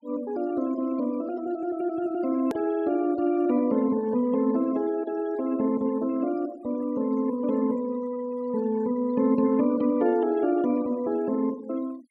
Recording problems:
noise reduction artefacts; signal-to-artefact ratio 24 dB
click at an edit; at 2.5 s

